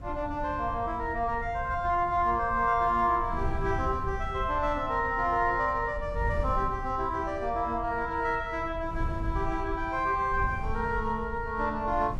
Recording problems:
wind noise; below 92 Hz, SNR 10 dB

